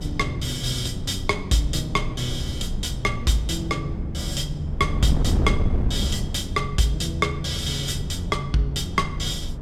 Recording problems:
wind on the microphone; below 150 Hz, SNR 5 dB

